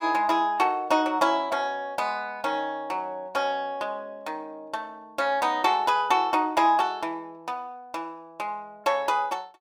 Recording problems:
none

